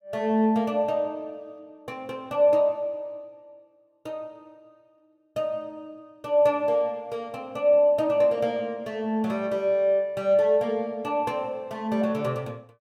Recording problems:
none

